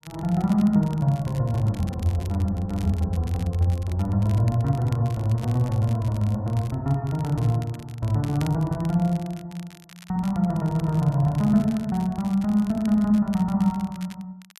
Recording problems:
crackle; vinyl, SNR 24 dB

